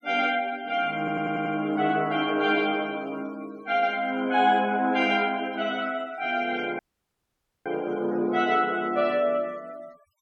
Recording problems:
noise reduction artefacts; signal-to-artefact ratio 26 dB
audio stuttering; at 1 s
audio cutting out; at 7 s for 1 s

